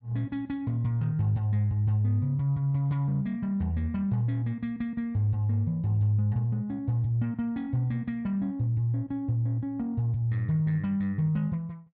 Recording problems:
none

